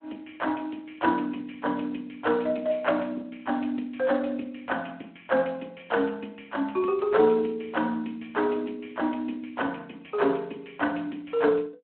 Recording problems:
telephone audio; 220 Hz to 3.3 kHz, Speex

